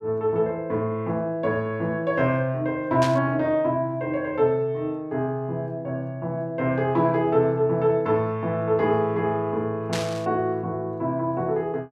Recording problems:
static burst; at 3 s and at 10 s; peak -3 dB vs average level

